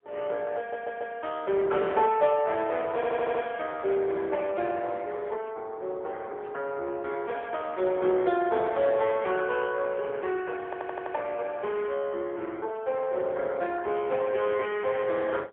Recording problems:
telephone audio; 320 Hz to 3.6 kHz, AMR-NB, then MP3
audio stuttering; at 0.5 s, at 3 s and at 11 s

